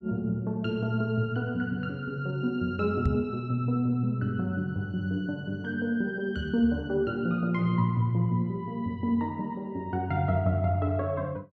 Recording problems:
microphone bump; at 3 s; peak +5 dB vs average level

